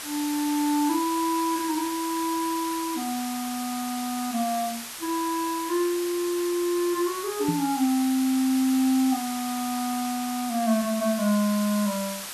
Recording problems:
background hiss; slope +1 dB per octave, SNR 8 dB
knock on the microphone; at 7.5 s; peak +1 dB vs average level

